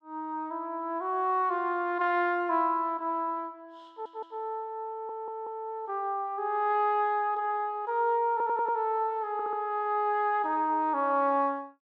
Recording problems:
audio stuttering; 4 times, first at 4 s

